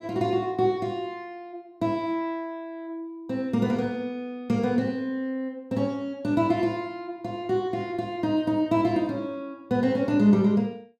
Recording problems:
none

